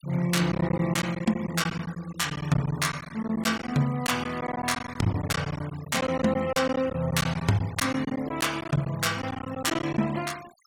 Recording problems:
noise reduction artefacts; signal-to-artefact ratio 18 dB
packet loss; 11% of the sound replaced, filled with silence

